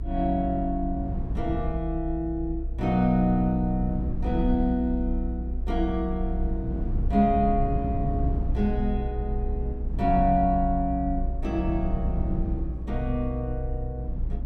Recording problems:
rumble; below 70 Hz, SNR 3 dB

